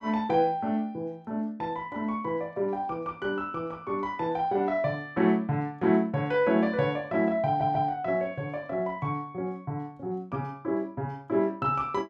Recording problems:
stutter; at 7.5 s

